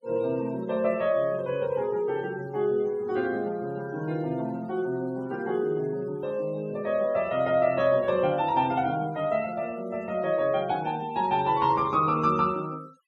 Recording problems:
denoising artefacts; signal-to-artefact ratio 25 dB

